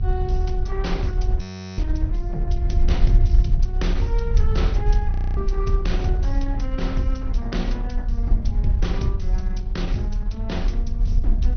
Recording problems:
low-pass filter; nothing above 6.1 kHz
lossy codec; Opus, log-spectral distance 2 dB
mains hum; 50 Hz, harmonics up to 600 Hz, SNR 10 dB
low-frequency rumble; below 60 Hz, strongest tone 32 Hz, SNR -6 dB
audio freezing; at 1.5 s and at 5 s

